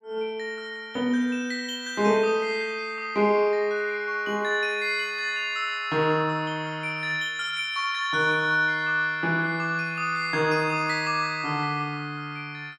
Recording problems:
none

